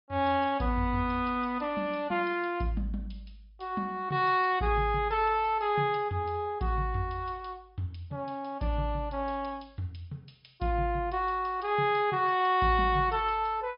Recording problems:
treble missing; nothing above 5 kHz
lossy compression; MP3, log-spectral distance 2 dB

